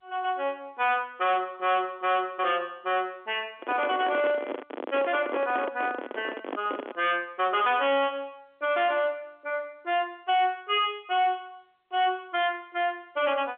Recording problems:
telephone audio; 220 Hz to 3.5 kHz, G.711
distortion; hard clipping, signal-to-distortion ratio 10 dB
microphone handling noise; from 3.5 to 7 s; peak 0 dB vs average level

